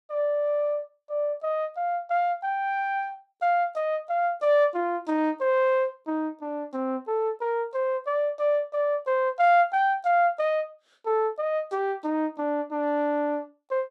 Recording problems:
none

